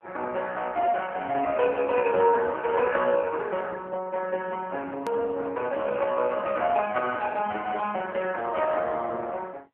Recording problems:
telephone audio; 300 Hz to 3.3 kHz, AMR-NB
edit click; at 5 s

